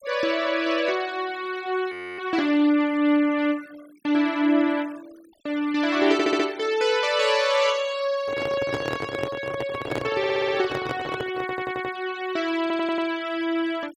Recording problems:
denoising artefacts; signal-to-artefact ratio 21 dB
audio freezing; at 2 s
audio stuttering; 4 times, first at 6 s
handling noise; from 8 to 12 s; peak 0 dB vs average level

